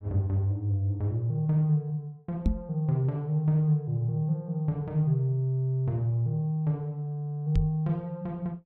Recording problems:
knock on the microphone; at 2.5 s and at 7.5 s; peak +6 dB vs average level

